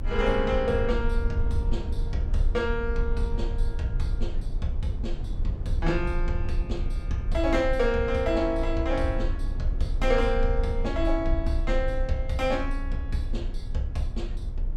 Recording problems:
low-frequency rumble; below 56 Hz, strongest tone 28 Hz, SNR 2 dB

